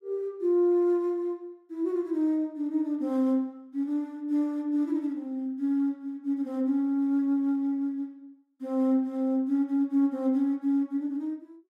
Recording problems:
none

